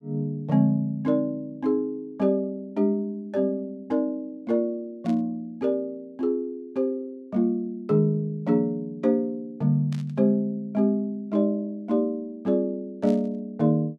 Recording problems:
static burst; at 5 s, at 10 s and at 13 s; peak -15 dB vs average level

